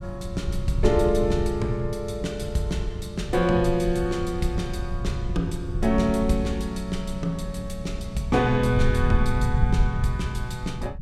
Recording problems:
rumble; below 96 Hz, SNR 4 dB

